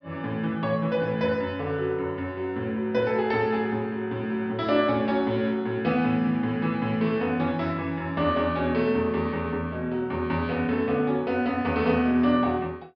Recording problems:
low-pass filter; nothing above 5.5 kHz

